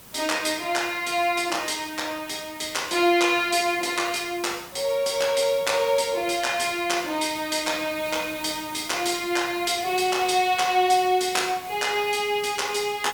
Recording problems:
background hiss; slope -2 dB per octave, SNR 18 dB

